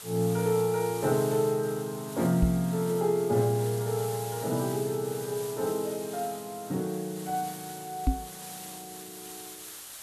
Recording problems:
background hiss; slope +1 dB per octave, SNR 12 dB
knock on the microphone; at 2.5 s and at 8 s; peak +6 dB vs average level

